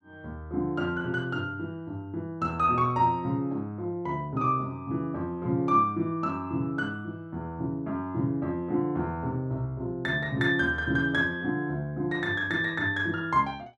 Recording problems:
none

